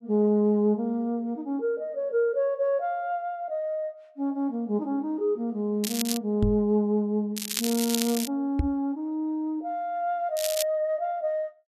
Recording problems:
crackle; at 6 s, at 7.5 s and at 10 s; loose cable, SNR 4 dB
microphone bump; at 6.5 s and at 8.5 s; peak +6 dB vs average level

